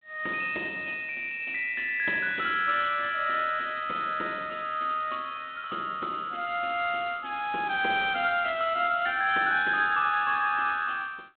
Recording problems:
telephone audio; 240 Hz to 3.7 kHz, G.726

